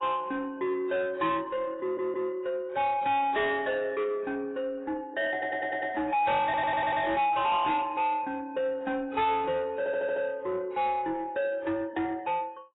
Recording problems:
lossy codec; AAC, log-spectral distance 2 dB, nothing above 3.8 kHz
distorted audio; soft clipping, signal-to-distortion ratio 8 dB
audio stuttering; 4 times, first at 2 s

